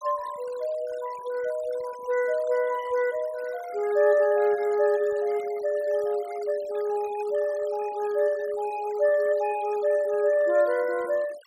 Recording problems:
denoising artefacts; signal-to-artefact ratio 22 dB

